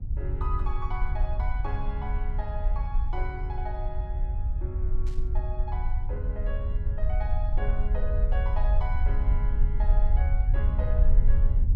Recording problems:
low-frequency rumble; below 58 Hz, SNR -10 dB
burst of static; at 5 s; peak -8 dB vs average level

